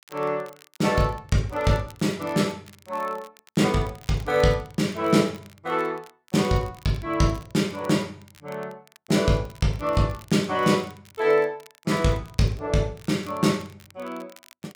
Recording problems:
crackle; vinyl, SNR 26 dB

